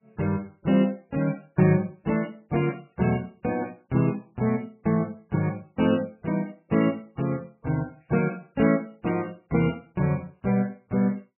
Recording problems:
lossy codec; MP3, log-spectral distance 3 dB, nothing above 2.4 kHz

